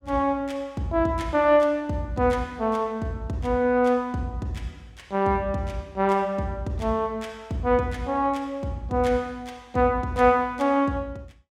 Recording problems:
none

